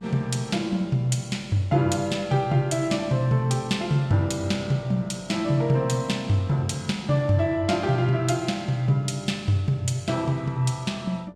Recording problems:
hum; 50 Hz, harmonics up to 1.4 kHz, SNR 27 dB

